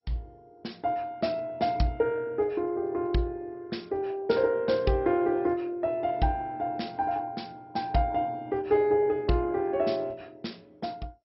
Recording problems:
lossy codec; MP2, log-spectral distance 2 dB, nothing above 5.5 kHz

